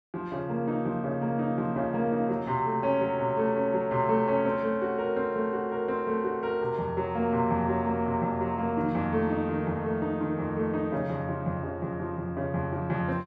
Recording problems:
none

